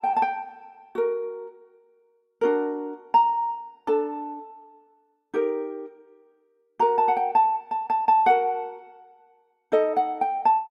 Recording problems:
none

